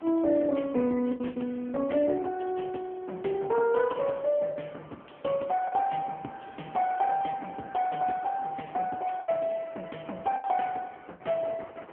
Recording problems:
telephone audio; 190 Hz to 2.8 kHz, AMR-NB
wind on the microphone; below 1.2 kHz, SNR 21 dB
packet loss; 4% of the sound replaced, filled with the last packet

